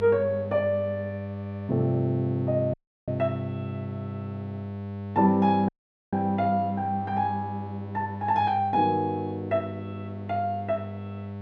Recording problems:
hum; 50 Hz, harmonics up to 1.1 kHz, SNR 9 dB
dropout; at 2.5 s and at 5.5 s

